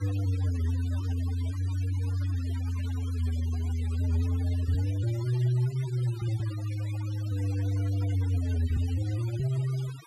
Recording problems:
denoising artefacts; signal-to-artefact ratio 18 dB

